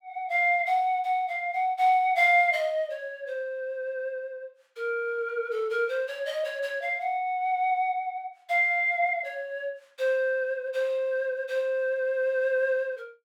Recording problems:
none

